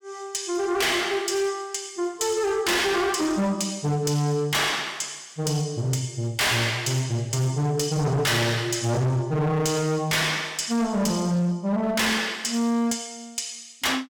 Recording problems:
distorted audio; hard clipping, uneven, signal-to-distortion ratio 6 dB

